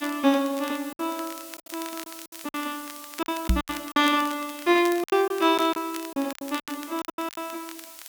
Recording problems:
hiss; SNR 16 dB
crackle; vinyl, SNR 17 dB
packet loss; 13% of the sound replaced, filled with silence
knock on the microphone; at 3.5 s; peak +6 dB vs average level

